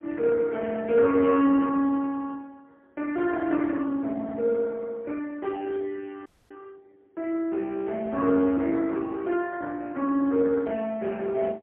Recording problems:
telephone audio; 240 Hz to 3.6 kHz, AMR-NB, then MP3
audio cutting out; at 6.5 s

